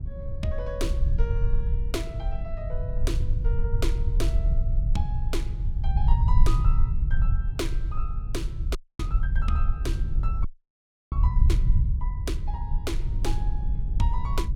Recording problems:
rumble; below 64 Hz, SNR -9 dB
wind noise; below 260 Hz, SNR 13 dB
frozen audio; at 9 s and at 10 s for 0.5 s

